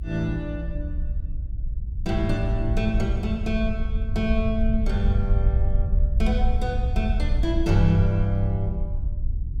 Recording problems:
rumble; below 60 Hz, SNR 0 dB

